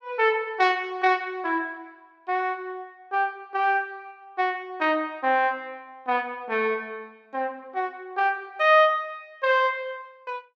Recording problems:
none

